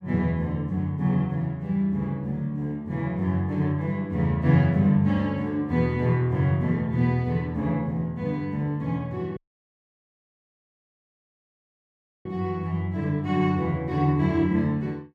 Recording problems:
dropout; at 9.5 s for 3 s

